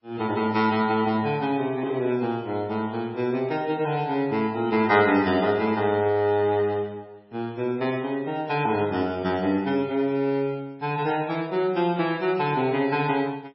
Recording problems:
codec artefacts; MP3, log-spectral distance 2 dB, nothing above 5.5 kHz

